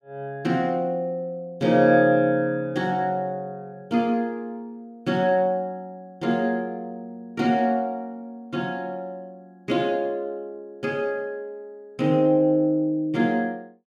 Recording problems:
none

